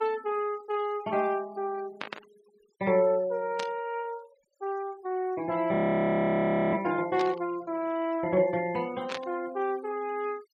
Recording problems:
denoising artefacts; signal-to-artefact ratio 21 dB
burst of static; 4 times, first at 2 s; peak -3 dB vs average level
frozen audio; at 5.5 s for 1 s

